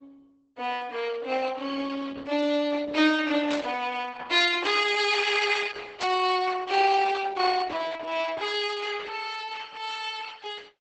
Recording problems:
codec artefacts; Opus, log-spectral distance 5 dB, nothing above 8 kHz
static burst; at 3.5 s and at 6 s; peak -4 dB vs average level

